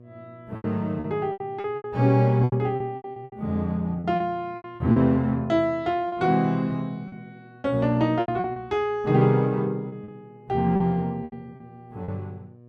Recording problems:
hum; 60 Hz, harmonics up to 720 Hz, SNR 25 dB
lost packets; 12% of the sound replaced, filled with repeated pitch periods

